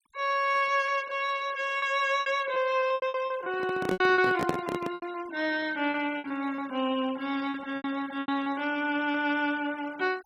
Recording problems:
denoising artefacts; signal-to-artefact ratio 21 dB
packet loss; 11% of the sound replaced, filled with repeated pitch periods
microphone handling noise; from 3.5 to 5 s; peak +3 dB vs average level

